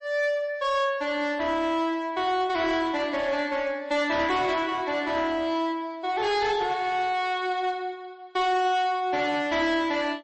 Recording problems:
lossy codec; MP3, log-spectral distance 2 dB, nothing above 8.2 kHz
distorted audio; hard clipping, uneven, signal-to-distortion ratio 11 dB

